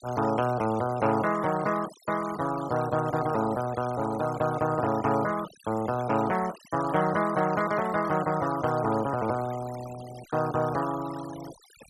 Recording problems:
noise reduction artefacts; signal-to-artefact ratio 17 dB

